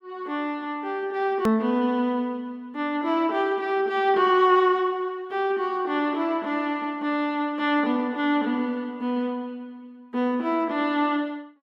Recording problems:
edit click; at 1.5 s

